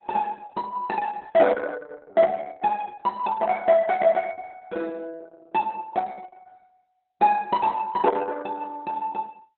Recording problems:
lossy compression; Opus, log-spectral distance 3 dB, nothing above 4 kHz

